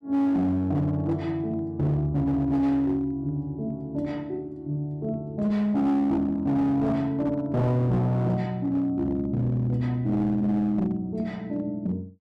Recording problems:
distortion; hard clipping, uneven, signal-to-distortion ratio 12 dB

